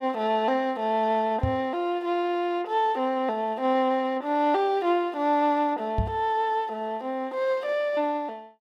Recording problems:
microphone bump; at 1.5 s and at 6 s; peak +3 dB vs average level

